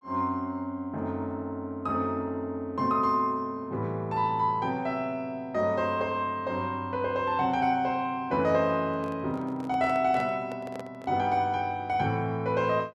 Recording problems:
handling noise; from 9 to 11 s; peak -8 dB vs average level

